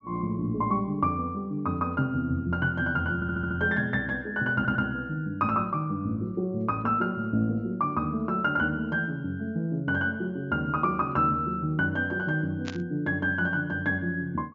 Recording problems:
treble missing; nothing above 7.2 kHz
stutter; at 3 s and at 4.5 s
burst of static; at 13 s; peak -6 dB vs average level

